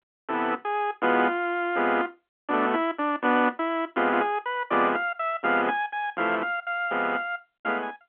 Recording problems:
telephone audio; 220 Hz to 3.4 kHz, G.711

